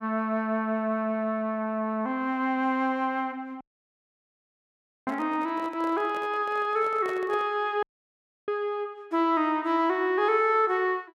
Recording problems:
handling noise; from 3.5 to 7.5 s; peak -9 dB vs average level
dropout; at 3.5 s for 1.5 s and at 8 s for 0.5 s

